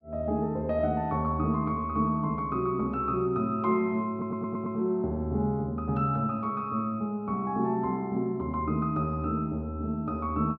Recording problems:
audio stuttering; at 4 s

